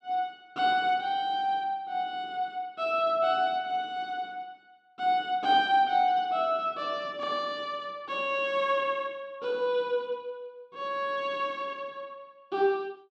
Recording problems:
none

